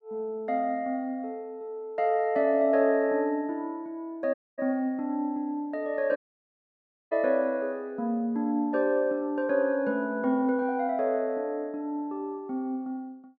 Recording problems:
audio cutting out; at 4.5 s and at 6 s for 1 s

